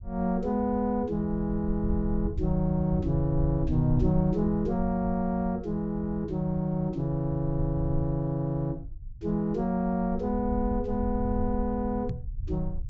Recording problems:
treble missing; nothing above 8 kHz
rumble; below 82 Hz, SNR 9 dB
microphone thump; at 12 s; peak 0 dB vs average level

